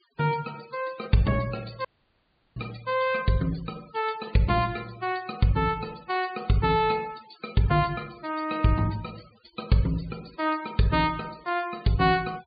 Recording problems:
treble missing; nothing above 4.8 kHz
denoising artefacts; signal-to-artefact ratio 21 dB
dropout; at 2 s for 0.5 s

